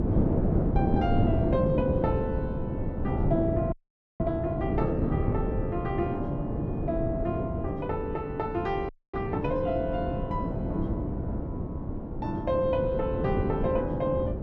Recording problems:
wind on the microphone; below 320 Hz, SNR -1 dB
audio freezing; at 3.5 s and at 9 s

